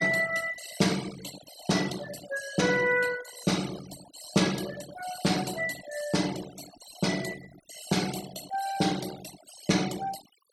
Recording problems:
denoising artefacts; signal-to-artefact ratio 12 dB

